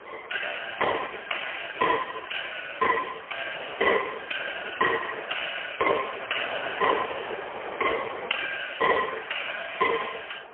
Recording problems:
phone line; 340 Hz to 3.1 kHz, AMR-NB, then MP3
wind noise; below 1.5 kHz, SNR 11 dB

